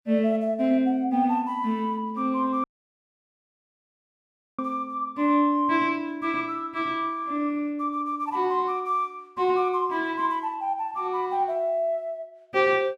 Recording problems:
audio cutting out; at 2.5 s for 2 s

